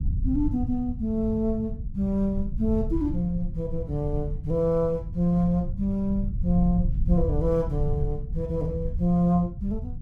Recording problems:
rumble; below 98 Hz, SNR 6 dB

